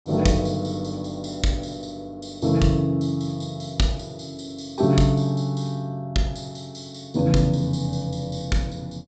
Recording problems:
treble missing; nothing above 8 kHz

